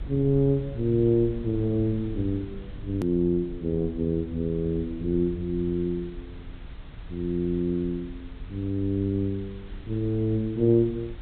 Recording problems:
low-pass filter; nothing above 4 kHz
hiss; SNR 28 dB
rumble; below 96 Hz, SNR 16 dB
edit click; at 3 s

